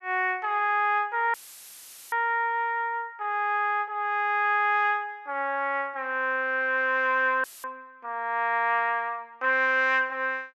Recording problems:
dropout; at 1.5 s for 1 s and at 7.5 s; filled with static

